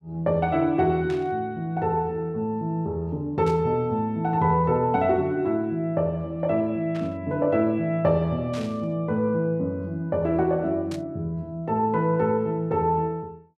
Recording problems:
static burst; 5 times, first at 1 s; peak -11 dB vs average level

